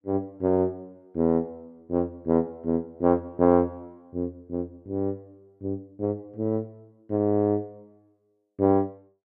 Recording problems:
none

